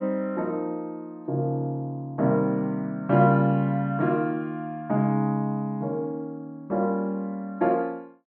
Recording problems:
none

